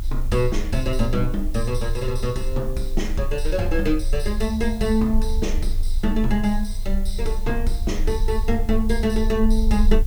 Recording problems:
background hiss; slope -2 dB per octave, SNR 22 dB
low-frequency rumble; below 42 Hz, strongest tone 24 Hz, SNR 3 dB

